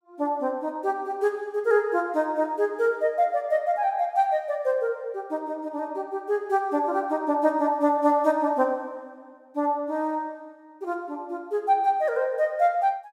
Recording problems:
none

